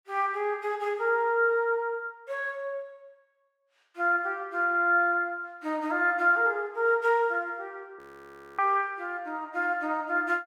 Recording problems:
frozen audio; at 8 s for 0.5 s

